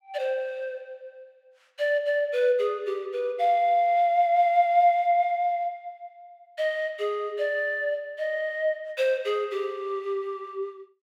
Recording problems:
none

